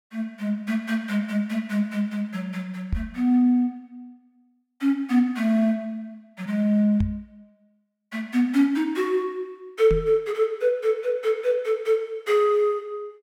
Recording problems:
microphone thump; at 3 s, at 7 s and at 10 s; peak +1 dB vs average level

